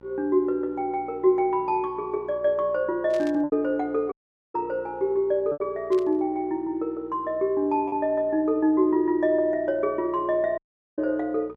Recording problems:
hum; 60 Hz, harmonics up to 1.5 kHz, SNR 27 dB
lost packets; 1.7% of the sound replaced, filled with repeated pitch periods
burst of static; at 3 s and at 6 s; peak -14 dB vs average level
dropout; at 4 s and at 11 s

